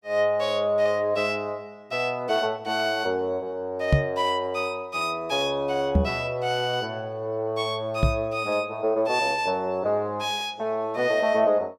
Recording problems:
microphone bump; at 4 s, at 6 s and at 8 s; peak +9 dB vs average level

